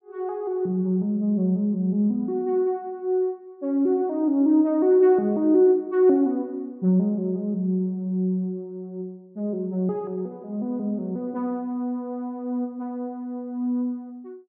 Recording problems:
none

